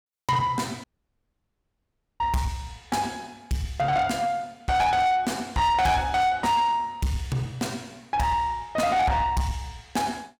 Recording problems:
distortion; soft clipping, signal-to-distortion ratio 8 dB
audio cutting out; at 1 s for 1.5 s

